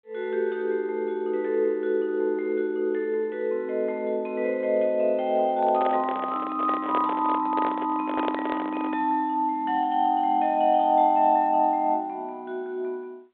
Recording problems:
phone line; 320 Hz to 3.9 kHz, G.726
handling noise; from 5.5 to 9 s; peak -1 dB vs average level

